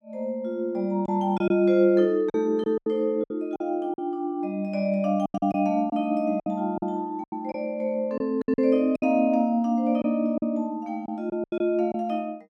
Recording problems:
lost packets; 9% of the sound replaced, filled with silence

